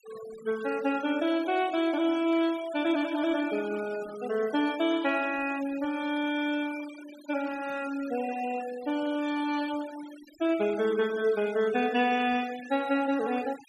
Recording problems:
denoising artefacts; signal-to-artefact ratio 18 dB

